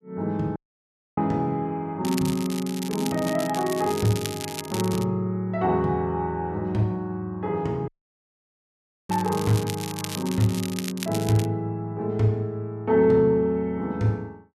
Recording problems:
audio cutting out; at 0.5 s for 0.5 s and at 8 s for 1 s
crackle; from 2 to 5 s and from 9 to 11 s; loose cable, SNR 10 dB

